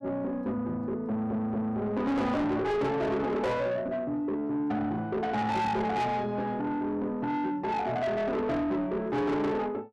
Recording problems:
distorted audio; soft clipping, signal-to-distortion ratio 7 dB
audio stuttering; at 1 s

